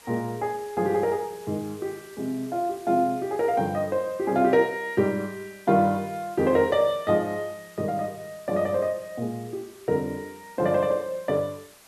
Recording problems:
hiss; slope -1 dB per octave, SNR 24 dB

